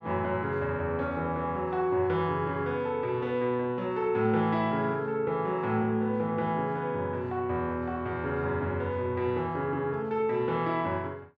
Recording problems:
none

